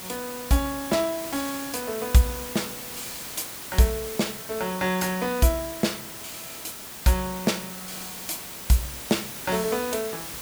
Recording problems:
hiss; slope -2 dB per octave, SNR 8 dB

